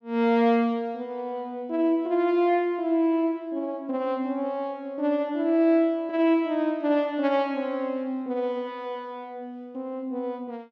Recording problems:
none

